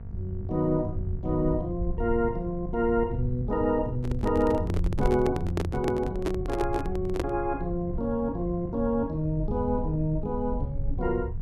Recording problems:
hum; 50 Hz, harmonics up to 1.1 kHz, SNR 16 dB
low-frequency rumble; below 84 Hz, SNR 8 dB
microphone handling noise; from 4 to 7.5 s; peak +3 dB vs average level

